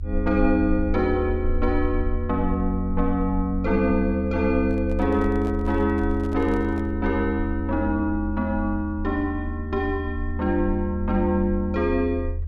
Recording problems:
low-frequency rumble; below 80 Hz, SNR 6 dB
microphone handling noise; from 4.5 to 7 s; peak -12 dB vs average level

